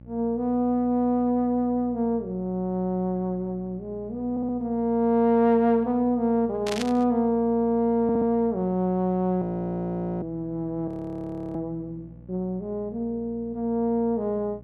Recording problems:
hum; 60 Hz, harmonics up to 840 Hz, SNR 21 dB
stutter; at 4.5 s and at 8 s
static burst; at 6.5 s; peak -3 dB vs average level
audio freezing; at 9.5 s for 1 s and at 11 s for 0.5 s

